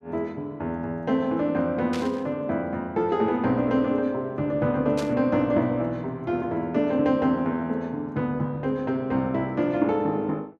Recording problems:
burst of static; at 2 s and at 5 s; peak -7 dB vs average level

